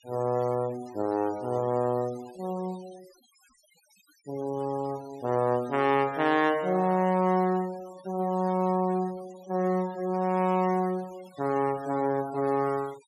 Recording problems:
noise reduction artefacts; signal-to-artefact ratio 23 dB

